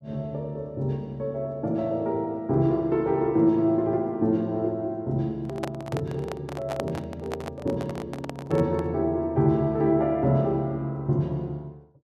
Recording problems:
handling noise; from 5.5 to 9 s; peak -1 dB vs average level

